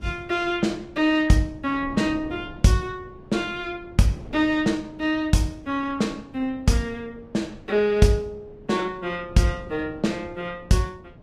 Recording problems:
lossy compression; Vorbis, log-spectral distance 2 dB, nothing above 14.3 kHz
wind on the microphone; below 360 Hz, SNR 20 dB

